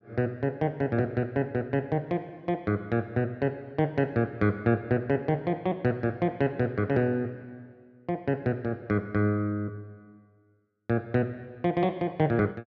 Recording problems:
none

